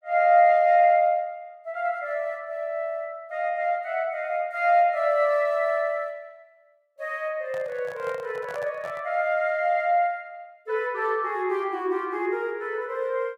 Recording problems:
handling noise; from 7.5 to 9 s; peak -10 dB vs average level

